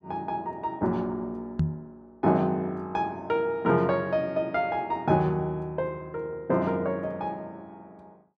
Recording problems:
knock on the microphone; at 1.5 s; peak +6 dB vs average level

